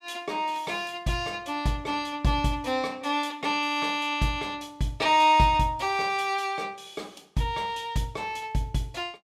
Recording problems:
none

